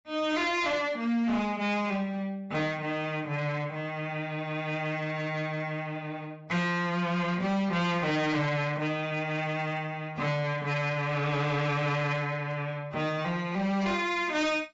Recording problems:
lossy codec; AAC, log-spectral distance 2 dB, nothing above 7.3 kHz
distorted audio; hard clipping, signal-to-distortion ratio 11 dB

